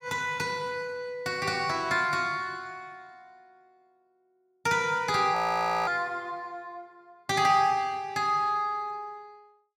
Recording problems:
audio freezing; at 5.5 s for 0.5 s

